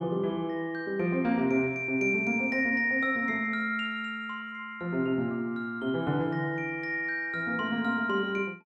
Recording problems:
none

